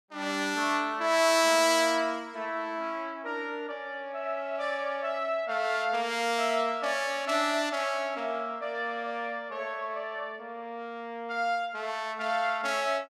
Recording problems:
none

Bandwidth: 15 kHz